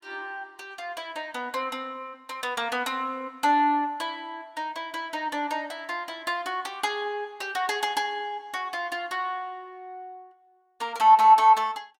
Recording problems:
none

